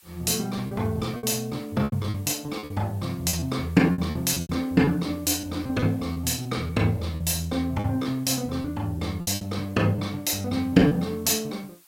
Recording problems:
background hiss; SNR 27 dB
lost packets; 11% of the sound replaced, filled with repeated pitch periods

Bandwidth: 16 kHz